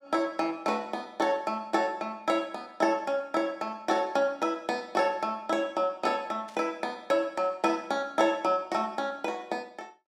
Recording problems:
burst of static; at 6.5 s; peak -17 dB vs average level

